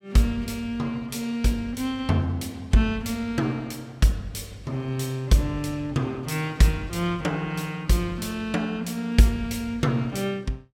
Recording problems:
none

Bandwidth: 16.5 kHz